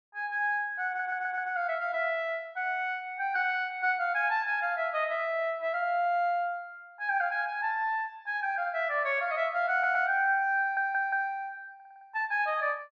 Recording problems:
audio stuttering; 4 times, first at 1 s

